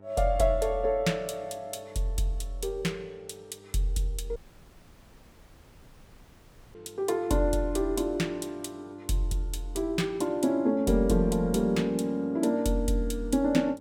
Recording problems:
electrical hum; 50 Hz, harmonics up to 1.8 kHz, SNR 26 dB
dropout; at 4.5 s for 2.5 s

